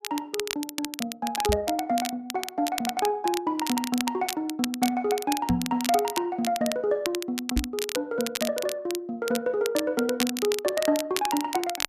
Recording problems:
crackling; vinyl, SNR 6 dB
knock on the microphone; at 1.5 s, at 5.5 s and at 7.5 s; peak +5 dB vs average level

